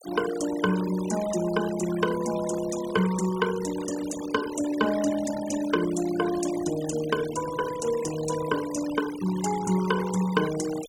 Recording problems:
noise reduction artefacts; signal-to-artefact ratio 12 dB

